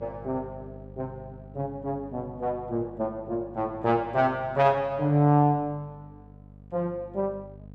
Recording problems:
electrical hum; 50 Hz, harmonics up to 750 Hz, SNR 20 dB

